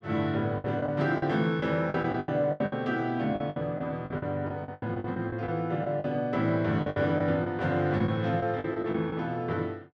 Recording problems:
lost packets; 13% of the sound replaced, filled with the last packet

